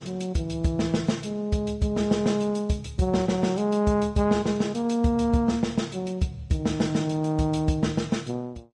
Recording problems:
codec artefacts; Vorbis, log-spectral distance 2 dB

